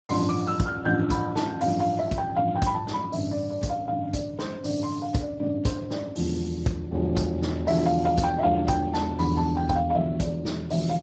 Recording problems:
lossy codec; Speex, log-spectral distance 4 dB, nothing above 7.6 kHz

